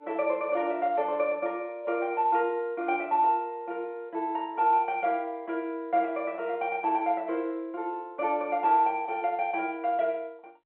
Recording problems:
phone line; 300 Hz to 3.3 kHz, G.711

